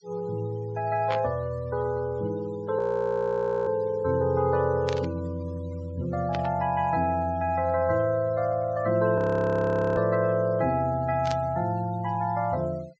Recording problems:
low-pass filter; nothing above 8 kHz
denoising artefacts; signal-to-artefact ratio 25 dB
static burst; 4 times, first at 1 s; peak -4 dB vs average level
frozen audio; at 3 s for 1 s and at 9 s for 1 s

